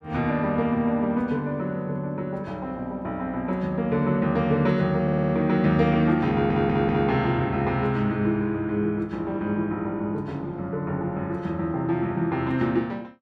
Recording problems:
audio stuttering; at 5 s and at 6.5 s

